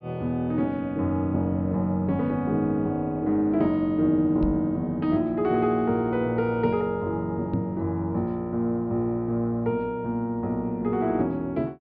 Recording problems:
treble cut off; nothing above 5.5 kHz
microphone thump; at 4.5 s and at 7.5 s; peak +2 dB vs average level

